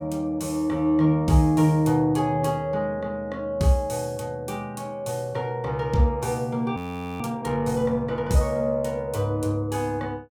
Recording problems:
frozen audio; at 7 s

